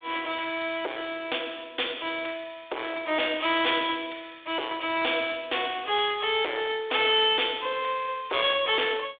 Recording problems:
telephone audio; 300 Hz to 3.6 kHz, G.726
distorted audio; hard clipping, uneven, signal-to-distortion ratio 6 dB

